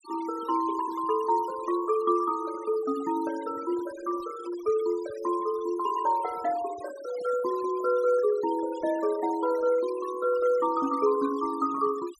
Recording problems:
denoising artefacts; signal-to-artefact ratio 19 dB

